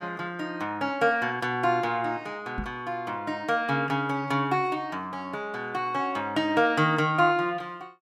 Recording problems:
microphone thump; at 2.5 s; peak -3 dB vs average level

